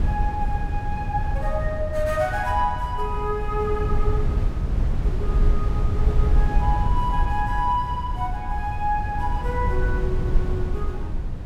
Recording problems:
wind on the microphone; below 82 Hz, SNR -1 dB

